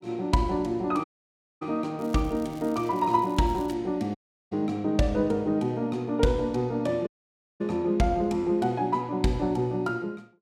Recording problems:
audio cutting out; at 1 s for 0.5 s, at 4 s and at 7 s for 0.5 s
crackle; from 2 to 3.5 s; loose cable, SNR 26 dB

